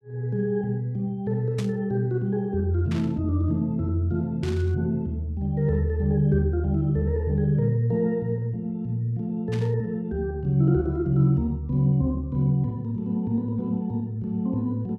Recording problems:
burst of static; 4 times, first at 1.5 s; peak -9 dB vs average level

